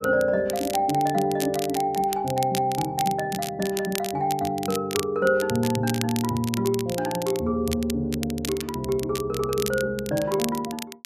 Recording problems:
crackle; vinyl, SNR 10 dB

